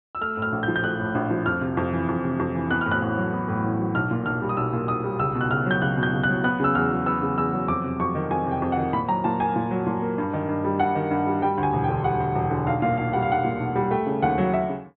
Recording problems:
treble cut off; nothing above 4 kHz

